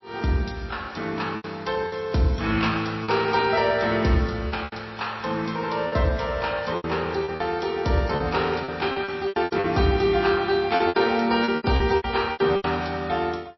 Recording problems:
lossy codec; MP3, log-spectral distance 4 dB, nothing above 5.7 kHz
lost packets; 10% of the sound replaced, filled with repeated pitch periods

